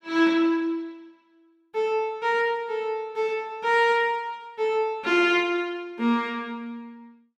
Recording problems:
none

